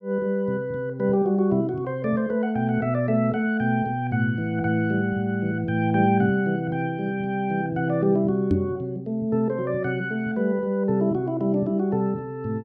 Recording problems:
microphone bump; at 8.5 s; peak +5 dB vs average level

